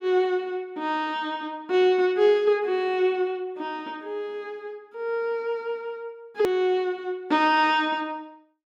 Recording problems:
click at an edit; at 6.5 s

